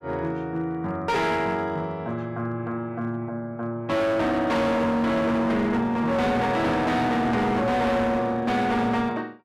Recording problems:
distortion; hard clipping, signal-to-distortion ratio 8 dB

